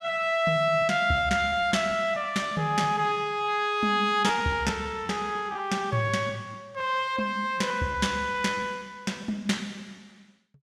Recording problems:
lost packets; 8% of the sound replaced, filled with repeated pitch periods

